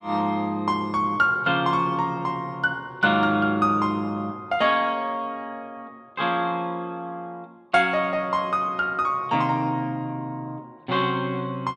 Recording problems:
none

